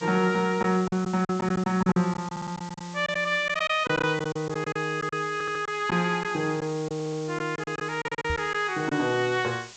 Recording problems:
treble cut off; nothing above 8 kHz
hiss; slope +1 dB per octave, SNR 18 dB
packet loss; 10% of the sound replaced, filled with silence
audio stuttering; 4 times, first at 2.5 s
knock on the microphone; at 8.5 s; peak -3 dB vs average level

